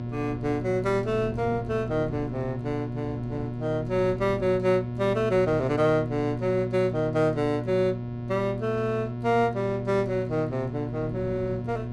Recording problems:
electrical hum; 60 Hz, harmonics up to 960 Hz, SNR 6 dB
wind on the microphone; below 300 Hz, SNR 17 dB

